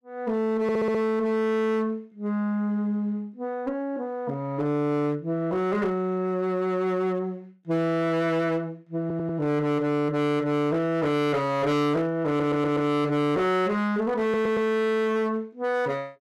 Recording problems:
distortion; hard clipping, signal-to-distortion ratio 11 dB
audio stuttering; 4 times, first at 0.5 s

